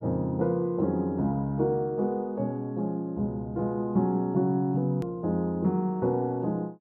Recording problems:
hard cut with a click; at 5 s

